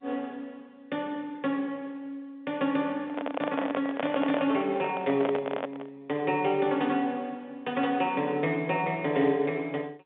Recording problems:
telephone audio; 190 Hz to 3.6 kHz, G.711
handling noise; from 3 to 6 s; peak +2 dB vs average level

